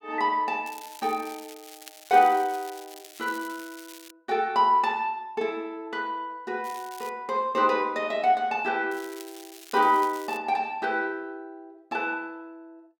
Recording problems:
crackle; from 0.5 to 4 s, at 6.5 s and from 9 to 10 s; loose cable, SNR 19 dB

